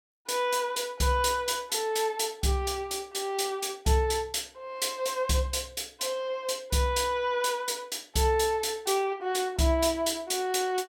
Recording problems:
none

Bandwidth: 16.5 kHz